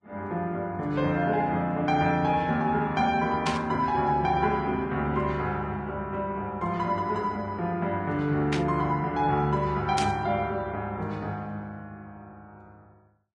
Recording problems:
codec artefacts; Vorbis, log-spectral distance 2 dB
burst of static; at 3.5 s, at 8.5 s and at 10 s; peak 0 dB vs average level

